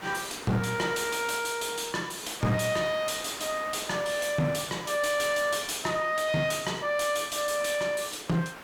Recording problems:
distorted audio; soft clipping, signal-to-distortion ratio 10 dB
hiss; SNR 15 dB

